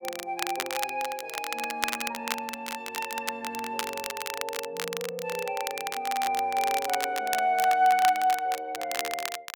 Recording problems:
crackle; vinyl, SNR 6 dB

